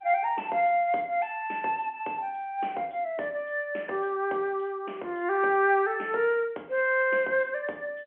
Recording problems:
phone line; 260 Hz to 3.3 kHz, G.711

